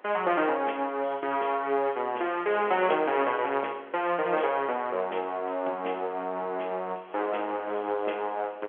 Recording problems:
phone line; 320 Hz to 3.3 kHz, G.711
wind noise; below 1.4 kHz, SNR 19 dB

